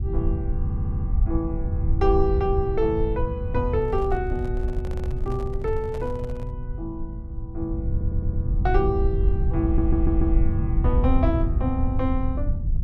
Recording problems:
low-frequency rumble; below 84 Hz, SNR -1 dB
audio stuttering; 4 times, first at 0.5 s
handling noise; from 4 to 6.5 s; peak -9 dB vs average level

